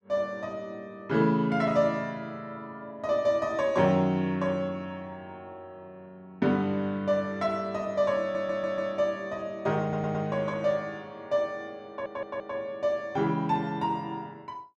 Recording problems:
stutter; at 8 s, at 10 s and at 12 s

